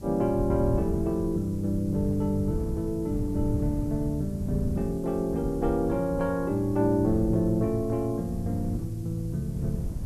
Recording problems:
background hiss; slope +2 dB per octave, SNR 27 dB
wind noise; below 130 Hz, SNR 8 dB

